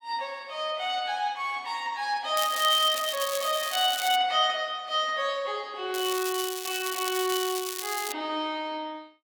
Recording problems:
crackling; from 2.5 to 4 s and from 6 to 8 s; loose cable, SNR 6 dB

